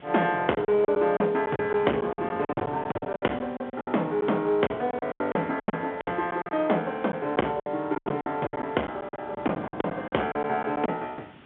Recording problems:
telephone audio; 280 Hz to 3.9 kHz, G.711
distortion; hard clipping, uneven, signal-to-distortion ratio 12 dB
hiss; SNR 27 dB
wind on the microphone; below 570 Hz, SNR 19 dB
packet loss; 15% of the sound replaced, filled with silence

